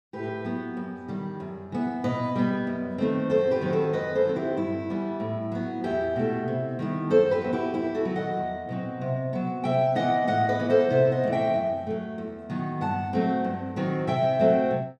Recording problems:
none

